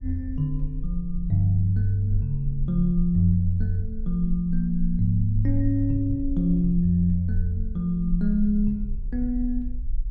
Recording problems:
rumble; below 42 Hz, strongest tone 18 Hz, SNR 9 dB

